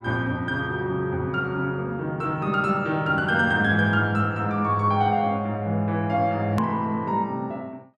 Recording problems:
edit click; at 6.5 s

